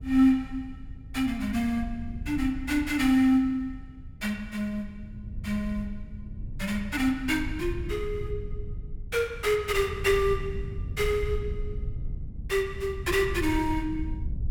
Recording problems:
wind noise; below 98 Hz, SNR 10 dB

